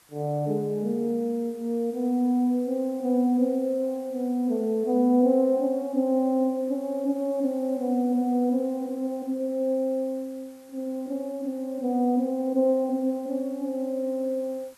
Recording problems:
background hiss; slope -1 dB per octave, SNR 29 dB

